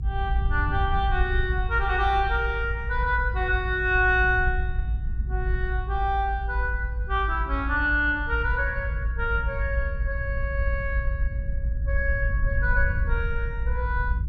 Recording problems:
rumble; below 62 Hz, SNR 2 dB

